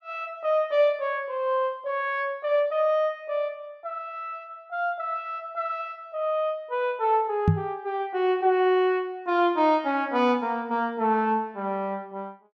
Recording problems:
microphone bump; at 7.5 s; peak +9 dB vs average level

